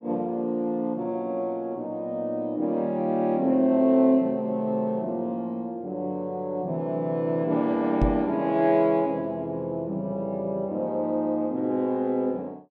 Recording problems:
knock on the microphone; at 8 s; peak +4 dB vs average level

